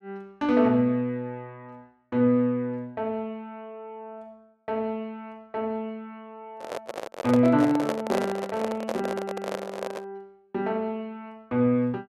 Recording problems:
handling noise; from 6.5 to 10 s; peak +2 dB vs average level

